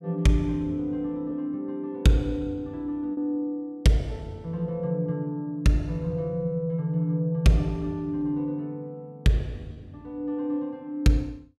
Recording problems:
lost packets; 0.8% of the sound replaced, filled with repeated pitch periods

